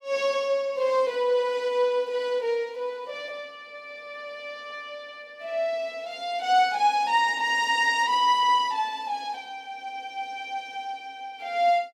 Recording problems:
none

